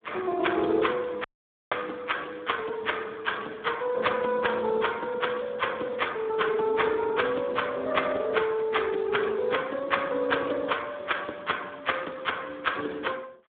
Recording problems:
telephone audio; 240 Hz to 3.6 kHz, Speex
audio cutting out; at 1 s

